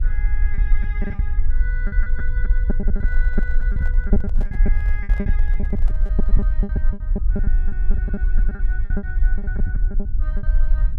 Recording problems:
hum; 60 Hz, harmonics up to 420 Hz, SNR 18 dB
rumble; below 46 Hz, strongest tone 18 Hz, SNR -16 dB
packet loss; 16% of the sound replaced, filled with repeated pitch periods
handling noise; from 3 to 6.5 s; peak -1 dB vs average level

